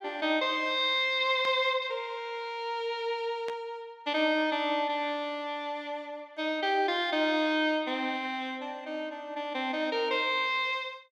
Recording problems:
burst of static; at 1.5 s and at 3.5 s; peak -9 dB vs average level

